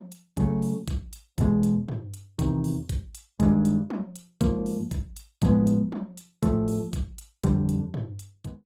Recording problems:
lossy codec; Opus, log-spectral distance 2 dB

